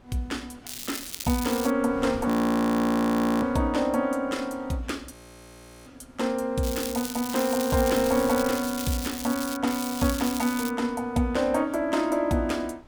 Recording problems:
wind on the microphone; below 750 Hz, SNR 21 dB
crackling; from 0.5 to 1.5 s, from 6.5 to 9.5 s and from 9.5 to 11 s; loose cable, SNR 8 dB
audio freezing; at 2.5 s for 1 s and at 5 s for 0.5 s

